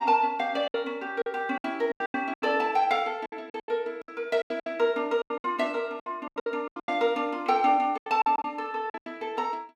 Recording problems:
lost packets; 16% of the sound replaced, filled with silence

